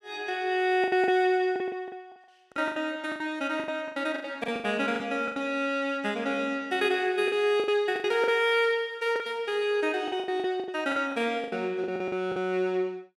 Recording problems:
lost packets; 14% of the sound replaced, filled with the last packet

